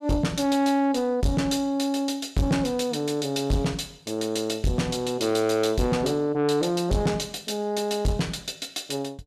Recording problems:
distorted audio; soft clipping, signal-to-distortion ratio 7 dB

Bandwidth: 14 kHz